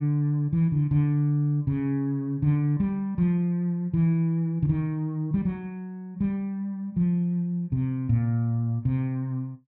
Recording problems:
none

